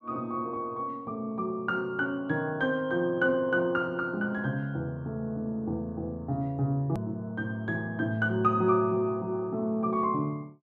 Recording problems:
hard cut with a click; at 7 s

